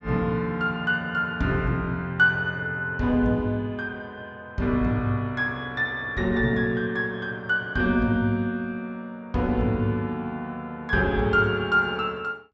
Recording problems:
treble cut off; nothing above 8 kHz

